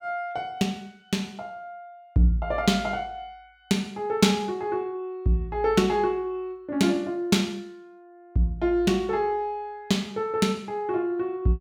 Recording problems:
none

